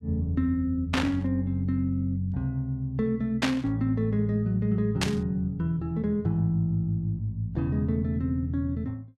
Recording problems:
burst of static; at 1 s, at 3.5 s and at 5 s; peak +4 dB vs average level

